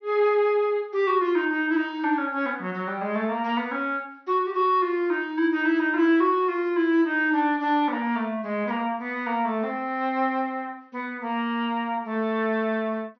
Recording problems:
low-pass filter; nothing above 6.1 kHz

